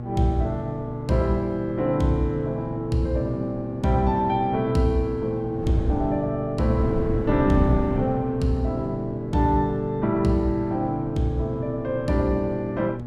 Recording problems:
electrical hum; 60 Hz, harmonics up to 840 Hz, SNR 10 dB
wind on the microphone; below 220 Hz, SNR 12 dB

